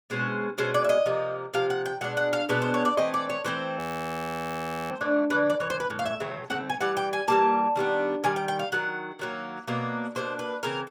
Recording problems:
audio freezing; at 4 s for 1 s

